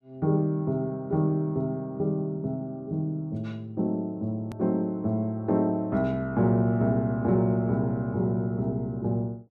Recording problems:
hard cut with a click; at 4.5 s

